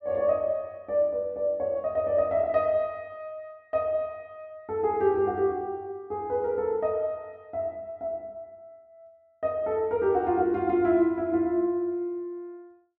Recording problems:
none

